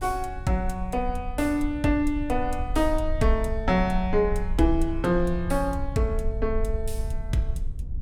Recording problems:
low-frequency rumble; below 60 Hz, strongest tone 22 Hz, SNR 7 dB

